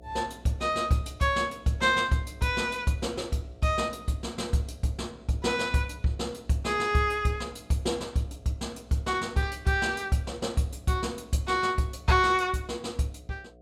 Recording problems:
hum; 60 Hz, harmonics up to 720 Hz, SNR 25 dB

